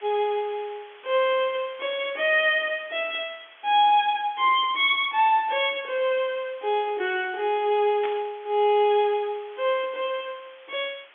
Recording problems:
telephone audio; 260 Hz to 3.5 kHz, G.711
background hiss; SNR 25 dB
static burst; at 8 s; peak -8 dB vs average level

